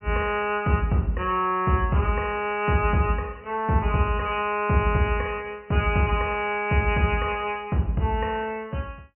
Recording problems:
treble missing; nothing above 3 kHz

